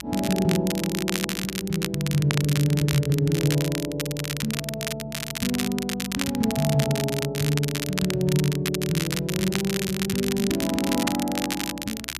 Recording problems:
electrical hum; 60 Hz, harmonics up to 360 Hz, SNR 21 dB
crackle; vinyl, SNR 5 dB

